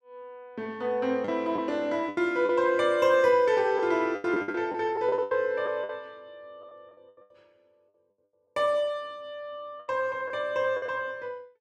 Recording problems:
lost packets; 8% of the sound replaced, filled with the last packet

